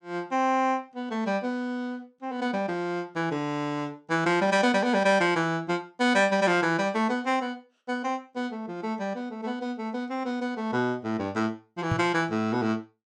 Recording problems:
knock on the microphone; at 12 s; peak +2 dB vs average level

